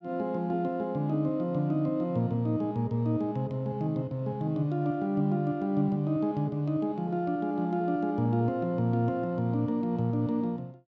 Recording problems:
none

